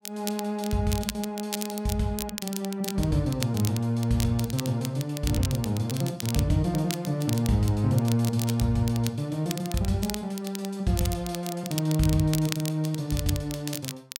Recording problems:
crackling; vinyl, SNR 10 dB

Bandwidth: 16 kHz